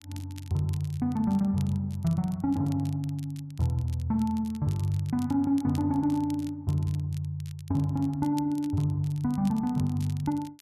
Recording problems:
crackling; vinyl, SNR 24 dB

